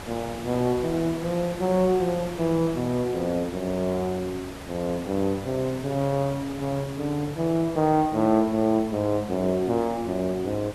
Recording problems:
background hiss; slope -5 dB per octave, SNR 14 dB

